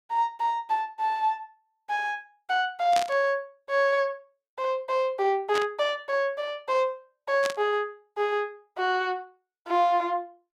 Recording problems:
burst of static; at 3 s, at 5.5 s and at 7.5 s; peak 0 dB vs average level

